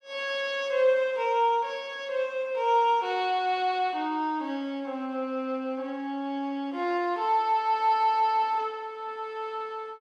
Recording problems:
none

